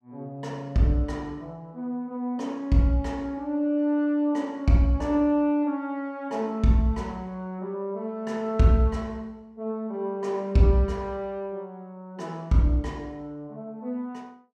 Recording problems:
none

